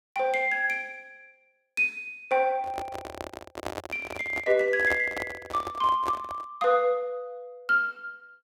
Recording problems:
microphone handling noise; from 2.5 to 6.5 s; peak -1 dB vs average level

